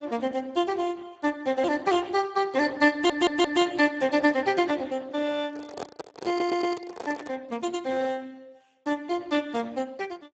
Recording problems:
lossy compression; Speex, log-spectral distance 5 dB, nothing above 7.3 kHz
stutter; at 3 s and at 6.5 s
microphone handling noise; from 5.5 to 7.5 s; peak -5 dB vs average level

